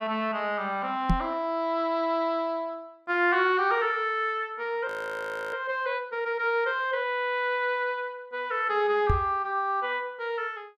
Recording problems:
microphone bump; at 1 s and at 9 s; peak +6 dB vs average level
frozen audio; at 5 s for 0.5 s

